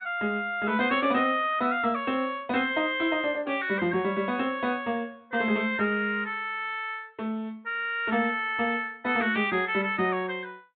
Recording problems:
low-pass filter; nothing above 4 kHz
lossy codec; MP2, log-spectral distance 2 dB

